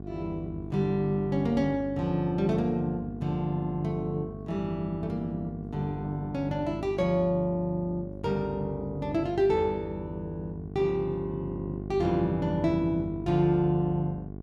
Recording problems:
electrical hum; 50 Hz, harmonics up to 800 Hz, SNR 10 dB

